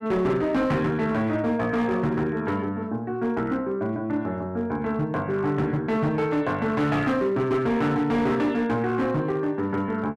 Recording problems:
distorted audio; hard clipping, signal-to-distortion ratio 12 dB

